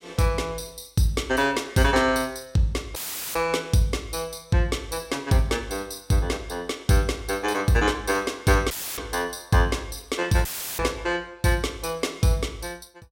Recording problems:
dropout; at 3 s, at 8.5 s and at 10 s; filled with static

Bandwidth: 16.5 kHz